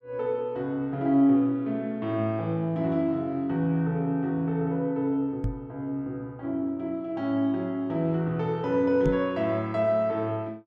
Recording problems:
microphone thump; at 5.5 s and at 9 s; peak +3 dB vs average level

